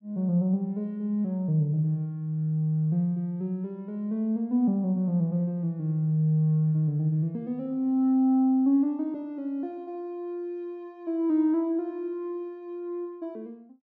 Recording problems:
none

